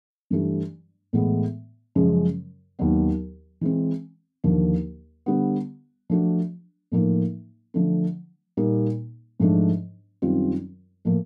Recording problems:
none

